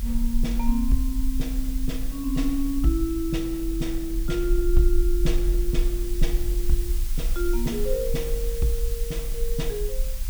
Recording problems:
hum; 50 Hz, harmonics up to 500 Hz, SNR 20 dB
hiss; slope +2 dB per octave, SNR 11 dB
rumble; below 42 Hz, strongest tone 24 Hz, SNR 1 dB

